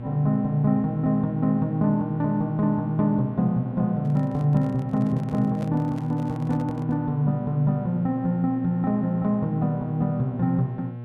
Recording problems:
hum; 60 Hz, harmonics up to 1.1 kHz, SNR 11 dB
handling noise; from 4 to 7 s; peak -11 dB vs average level

